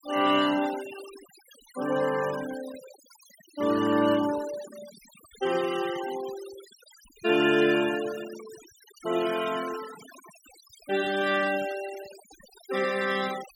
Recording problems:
denoising artefacts; signal-to-artefact ratio 15 dB

